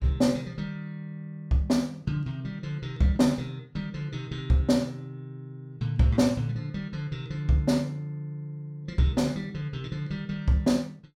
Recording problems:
none

